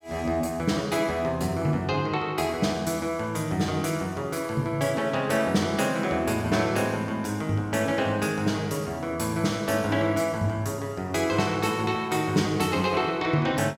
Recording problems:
none

